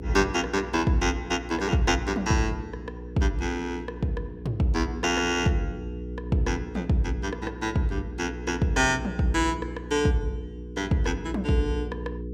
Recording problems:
mains hum; 60 Hz, harmonics up to 480 Hz, SNR 11 dB

